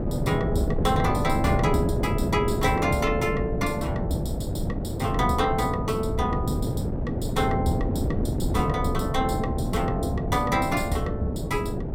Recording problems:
wind noise; below 300 Hz, SNR 1 dB

